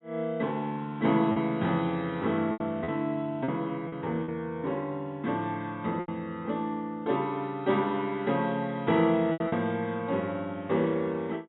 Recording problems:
treble cut off; nothing above 3.9 kHz
packet loss; 4% of the sound replaced, filled with repeated pitch periods

